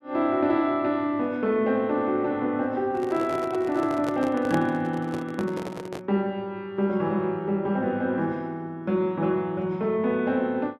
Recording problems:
handling noise; from 3 to 6 s; peak 0 dB vs average level

